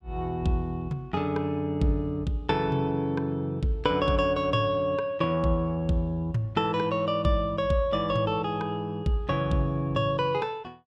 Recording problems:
none

